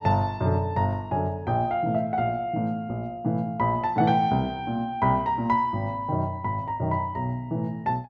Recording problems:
none

